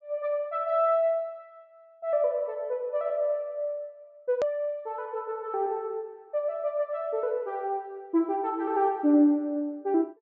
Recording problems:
treble cut off; nothing above 7.5 kHz
edit click; at 4.5 s

